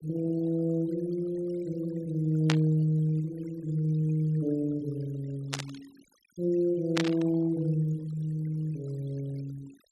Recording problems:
noise reduction artefacts; signal-to-artefact ratio 23 dB
static burst; at 2.5 s, at 5.5 s and at 7 s; peak +4 dB vs average level

